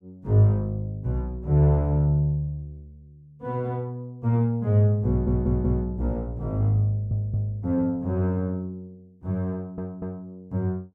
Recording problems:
audio stuttering; at 5 s, at 7 s and at 9.5 s

